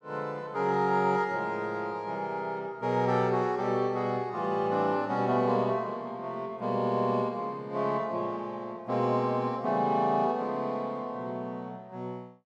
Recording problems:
none

